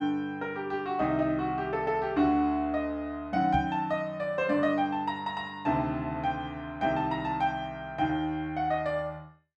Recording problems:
microphone thump; at 3.5 s; peak 0 dB vs average level

